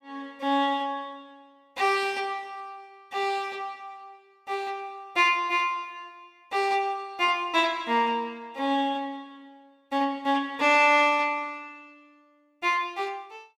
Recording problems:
none

